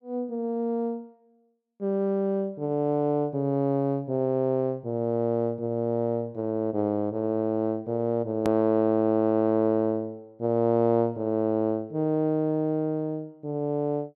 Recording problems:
hard cut with a click; at 8.5 s

